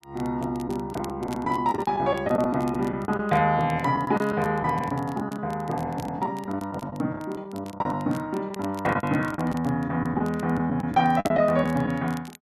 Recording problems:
crackling; vinyl, SNR 24 dB
packet loss; 9% of the sound replaced, filled with the last packet

